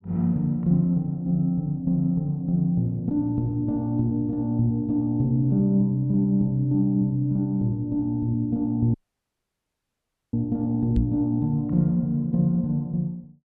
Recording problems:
dropout; at 9 s for 1.5 s
microphone bump; at 11 s; peak +3 dB vs average level

